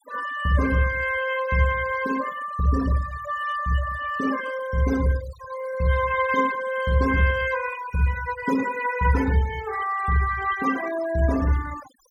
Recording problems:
denoising artefacts; signal-to-artefact ratio 14 dB

